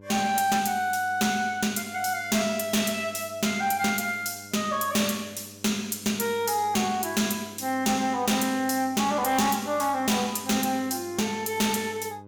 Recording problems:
distorted audio; hard clipping, signal-to-distortion ratio 11 dB
hum; 50 Hz, harmonics up to 1.1 kHz, SNR 23 dB

